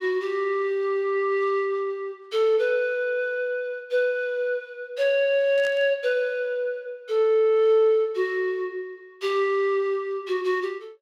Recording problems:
burst of static; at 5.5 s; peak -12 dB vs average level

